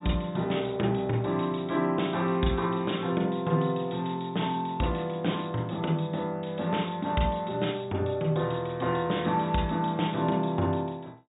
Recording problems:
treble missing; nothing above 4 kHz

